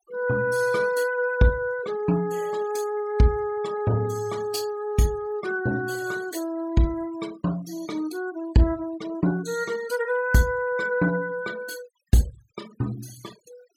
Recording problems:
denoising artefacts; signal-to-artefact ratio 20 dB

